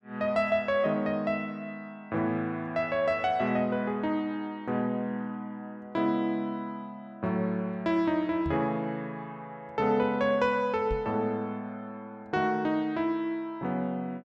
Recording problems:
microphone bump; at 8.5 s and at 11 s; peak -2 dB vs average level

